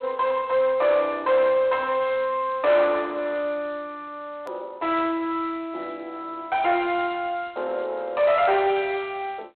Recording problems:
telephone audio; 340 Hz to 4 kHz, G.726
distortion; soft clipping, signal-to-distortion ratio 11 dB
hard cut with a click; at 4.5 s

